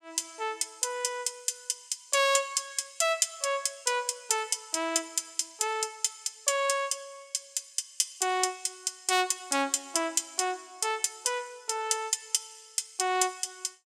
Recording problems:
none

